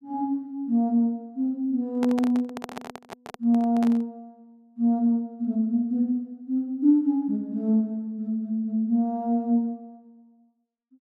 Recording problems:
handling noise; from 2 to 4 s; peak -4 dB vs average level

